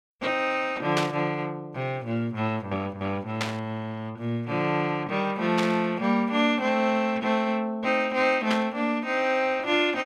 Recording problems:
burst of static; 4 times, first at 1 s; peak +2 dB vs average level

